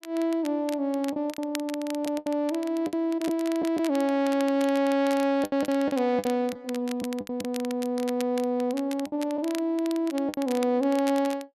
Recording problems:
crackling; vinyl, SNR 16 dB
packet loss; 7% of the sound replaced, filled with the last packet

